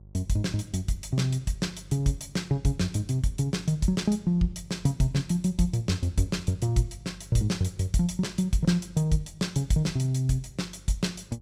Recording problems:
electrical hum; 50 Hz, harmonics up to 550 Hz, SNR 23 dB

